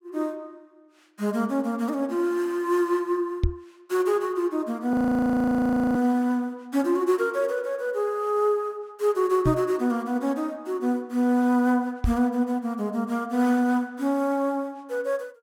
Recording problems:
microphone thump; at 3.5 s, at 9.5 s and at 12 s; peak +5 dB vs average level
audio freezing; at 5 s for 1 s

